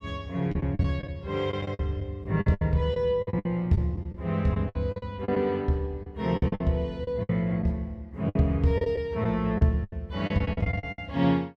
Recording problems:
packet loss; 14% of the sound replaced, filled with the last packet

